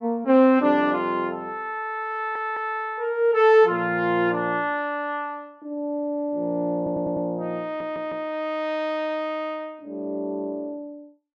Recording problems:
stutter; at 2 s, at 7 s and at 7.5 s

